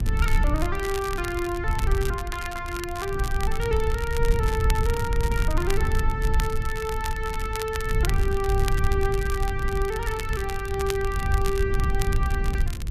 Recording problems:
electrical hum; 50 Hz, harmonics up to 500 Hz, SNR 21 dB
low-frequency rumble; below 76 Hz, SNR -1 dB
crackle; vinyl, SNR 9 dB

